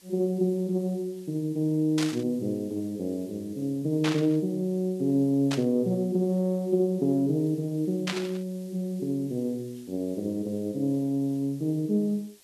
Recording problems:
hiss; SNR 26 dB
burst of static; 4 times, first at 2 s; peak 0 dB vs average level

